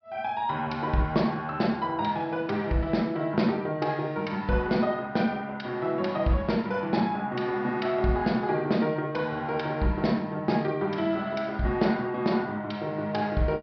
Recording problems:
treble missing; nothing above 5.5 kHz

